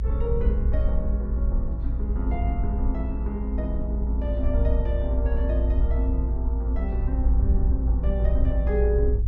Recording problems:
treble missing; nothing above 8 kHz
low-frequency rumble; below 58 Hz, strongest tone 56 Hz, SNR -6 dB

